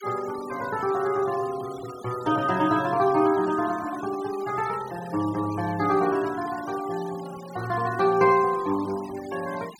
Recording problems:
noise reduction artefacts; signal-to-artefact ratio 18 dB

